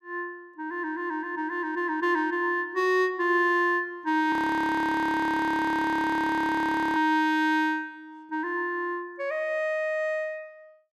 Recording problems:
audio freezing; at 4.5 s for 2.5 s

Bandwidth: 14 kHz